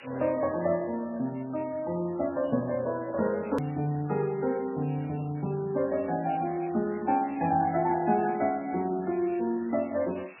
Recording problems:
lossy codec; MP3, log-spectral distance 7 dB, nothing above 13.1 kHz
background hiss; SNR 22 dB
click at an edit; at 3.5 s

